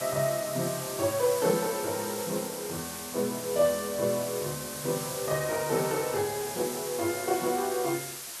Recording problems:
background hiss; slope +1 dB per octave, SNR 6 dB

